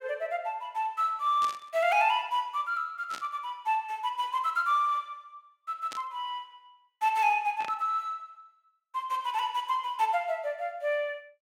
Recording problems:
static burst; 4 times, first at 1.5 s; peak -7 dB vs average level

